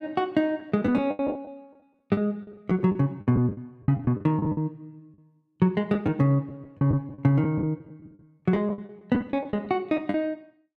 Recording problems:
packet loss; 15% of the sound replaced, filled with the last packet

